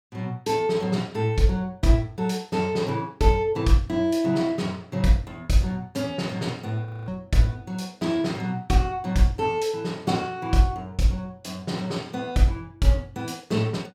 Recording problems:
audio freezing; at 7 s

